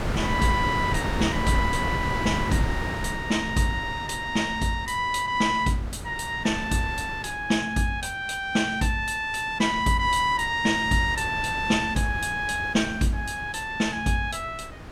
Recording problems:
wind on the microphone; below 830 Hz, SNR 8 dB

